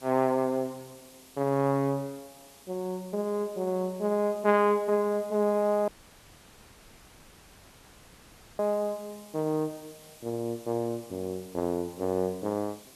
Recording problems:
background hiss; SNR 22 dB
audio cutting out; at 6 s for 2.5 s

